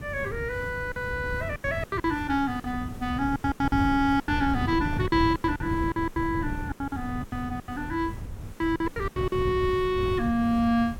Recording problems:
background hiss; slope -5 dB per octave, SNR 22 dB
wind on the microphone; below 160 Hz, SNR 8 dB
lost packets; 13% of the sound replaced, filled with silence

